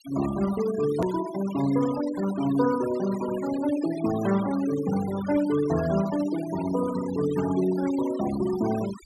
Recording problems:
denoising artefacts; signal-to-artefact ratio 14 dB
click at an edit; at 1 s

